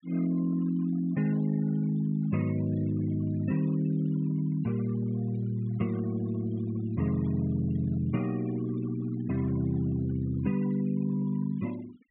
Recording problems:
treble missing; nothing above 4 kHz
noise reduction artefacts; signal-to-artefact ratio 22 dB

